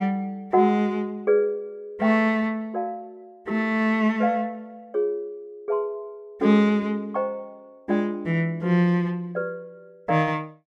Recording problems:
none

